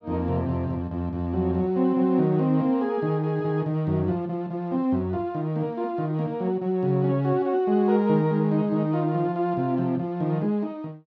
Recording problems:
none

